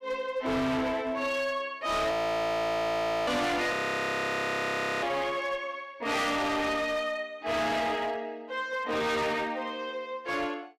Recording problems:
distortion; hard clipping, signal-to-distortion ratio 7 dB
audio freezing; at 2 s for 1 s and at 3.5 s for 1.5 s

